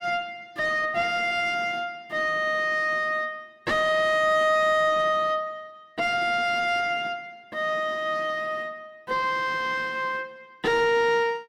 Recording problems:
distortion; soft clipping, signal-to-distortion ratio 10 dB

